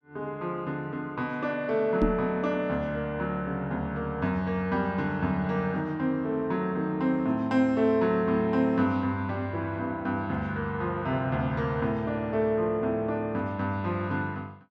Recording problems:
microphone thump; at 2 s; peak +6 dB vs average level

